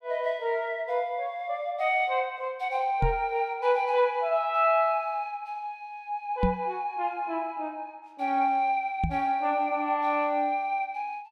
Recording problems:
microphone thump; at 3 s, at 6.5 s and at 9 s; peak +4 dB vs average level

